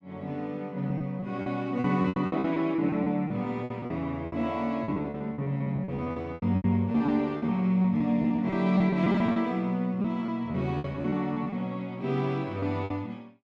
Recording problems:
packet loss; 14% of the sound replaced, filled with repeated pitch periods

